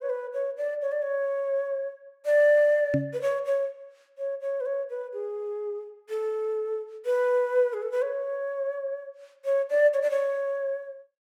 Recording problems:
microphone bump; at 3 s; peak +4 dB vs average level

